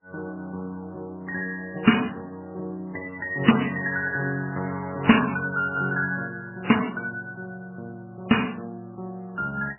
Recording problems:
lossy codec; MP3, then AAC, log-spectral distance 4 dB, nothing above 2.9 kHz

